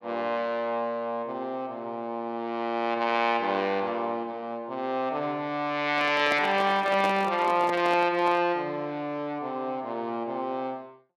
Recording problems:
handling noise; from 6 to 8.5 s; peak 0 dB vs average level

